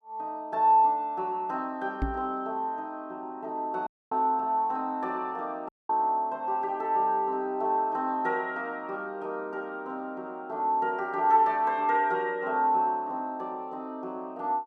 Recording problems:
microphone bump; at 2 s; peak +2 dB vs average level
dropout; at 4 s and at 5.5 s

